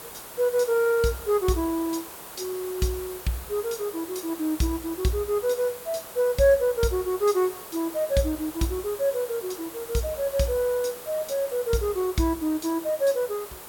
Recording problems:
background hiss; SNR 13 dB

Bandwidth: 17 kHz